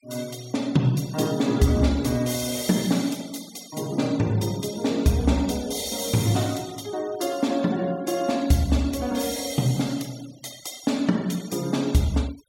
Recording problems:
noise reduction artefacts; signal-to-artefact ratio 21 dB

